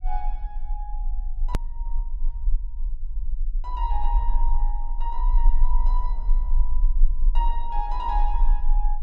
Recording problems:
low-frequency rumble; below 34 Hz, strongest tone 20 Hz, SNR -7 dB
hard cut with a click; at 1.5 s

